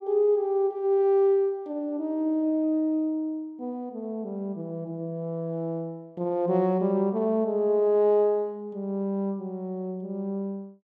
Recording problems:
none

